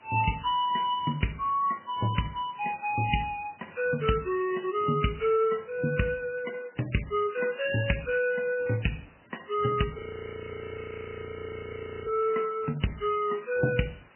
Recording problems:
lossy codec; MP3, log-spectral distance 8 dB, nothing above 3 kHz
hiss; SNR 28 dB
audio freezing; at 10 s for 2 s

